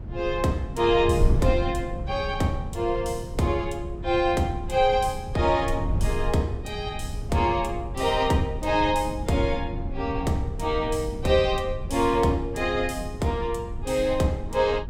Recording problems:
wind on the microphone; below 100 Hz, SNR 8 dB

